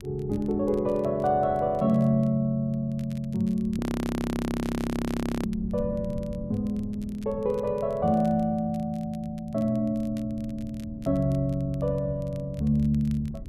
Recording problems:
wind on the microphone; below 200 Hz, SNR 16 dB
crackling; vinyl, SNR 29 dB
audio freezing; at 4 s for 1.5 s

